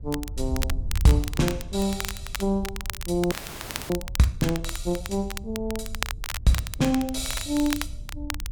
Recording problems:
wind noise; below 74 Hz, SNR 10 dB
crackle; vinyl, SNR 9 dB
audio freezing; at 3.5 s for 0.5 s

